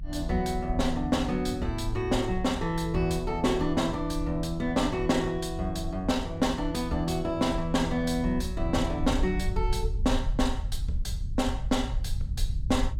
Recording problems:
rumble; below 72 Hz, SNR 7 dB

